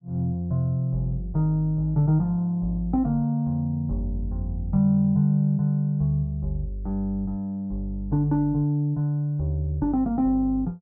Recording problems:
none

